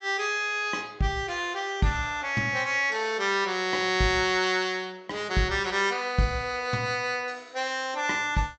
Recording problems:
treble cut off; nothing above 8 kHz

